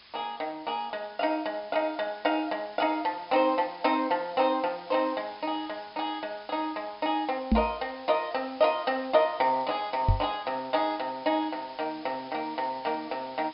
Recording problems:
treble missing; nothing above 5.5 kHz
background hiss; SNR 21 dB
microphone thump; at 7.5 s and at 10 s; peak +8 dB vs average level

